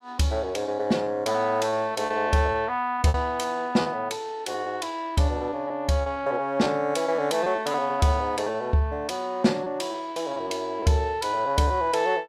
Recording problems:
lost packets; 7% of the sound replaced, filled with repeated pitch periods

